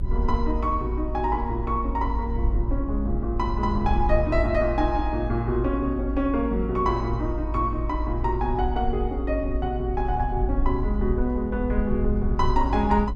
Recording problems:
rumble; below 56 Hz, SNR 3 dB

